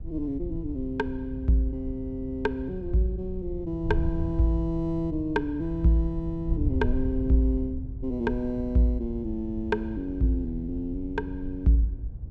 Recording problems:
wind noise; below 86 Hz, SNR 7 dB

